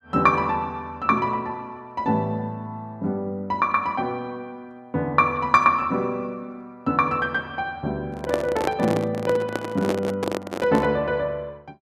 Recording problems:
handling noise; from 8 to 11 s; peak +3 dB vs average level

